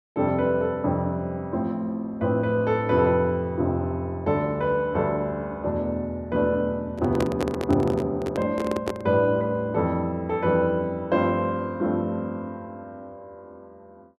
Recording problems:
microphone handling noise; from 7 to 9 s; peak +2 dB vs average level

